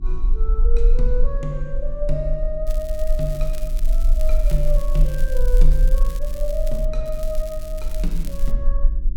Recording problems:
electrical hum; 50 Hz, harmonics up to 350 Hz, SNR 10 dB
rumble; below 36 Hz, strongest tone 26 Hz, SNR -6 dB
crackle; from 2.5 to 7 s and from 7 to 8.5 s; loose cable, SNR 14 dB

